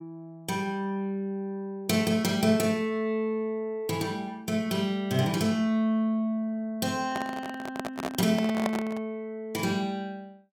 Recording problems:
microphone handling noise; from 7 to 9 s; peak +3 dB vs average level

